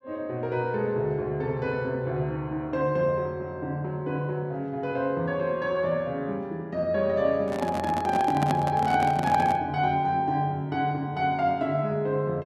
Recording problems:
microphone handling noise; from 7.5 to 9.5 s; peak +2 dB vs average level

